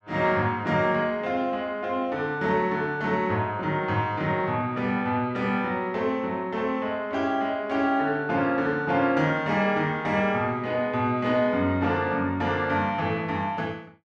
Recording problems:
none

